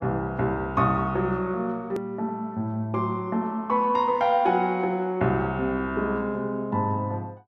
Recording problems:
edit click; at 2 s

